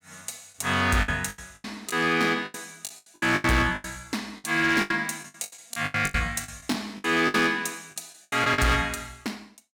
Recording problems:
distortion; hard clipping, uneven, signal-to-distortion ratio 11 dB
packet loss; 16% of the sound replaced, filled with the last packet

